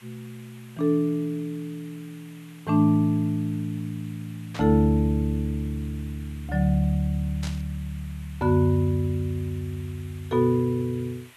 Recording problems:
hiss; SNR 25 dB
burst of static; at 4.5 s and at 7.5 s; peak -8 dB vs average level

